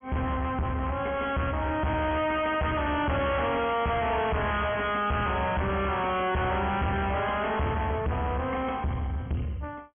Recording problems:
treble cut off; nothing above 3.3 kHz
distortion; soft clipping, signal-to-distortion ratio 6 dB

